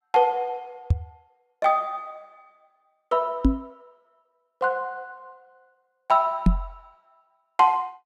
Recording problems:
knock on the microphone; at 1 s, at 3.5 s and at 6.5 s; peak +9 dB vs average level

